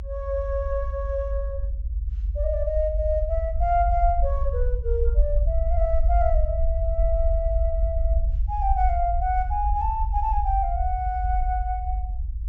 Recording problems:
treble missing; nothing above 8 kHz
rumble; below 60 Hz, SNR -1 dB

